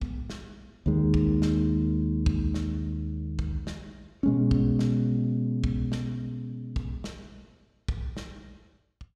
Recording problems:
none

